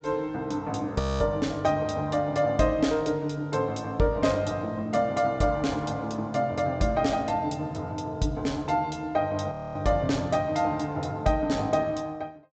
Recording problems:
treble missing; nothing above 8 kHz
frozen audio; at 1 s and at 9.5 s

